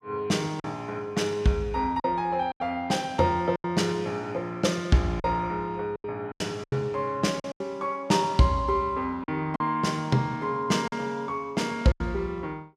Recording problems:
packet loss; 7% of the sound replaced, filled with silence

